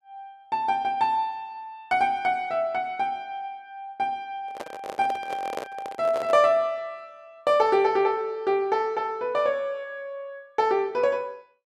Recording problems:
handling noise; from 4.5 to 6.5 s; peak -2 dB vs average level

